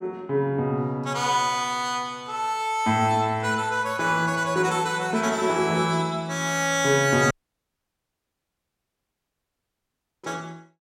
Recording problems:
dropout; at 7.5 s for 3 s

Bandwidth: 16.5 kHz